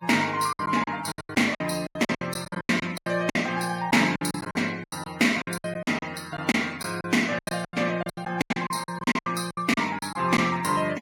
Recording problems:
noise reduction artefacts; signal-to-artefact ratio 18 dB
lost packets; 19% of the sound replaced, filled with silence

